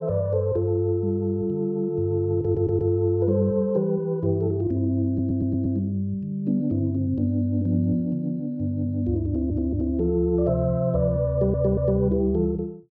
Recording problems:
stutter; 4 times, first at 2.5 s

